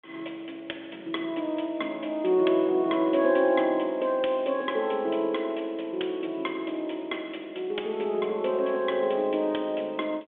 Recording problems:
phone line; 280 Hz to 3.5 kHz, G.726

